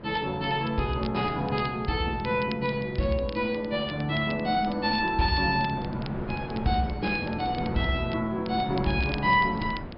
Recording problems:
treble missing; nothing above 5.5 kHz
wind noise; below 540 Hz, SNR 14 dB
crackling; vinyl, SNR 20 dB

